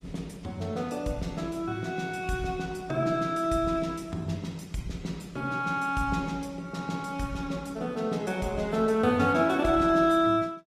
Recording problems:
lossy codec; Opus, log-spectral distance 3 dB, nothing above 15.1 kHz

